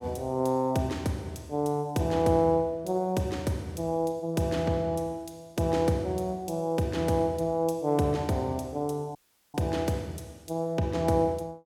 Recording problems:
audio cutting out; at 9 s

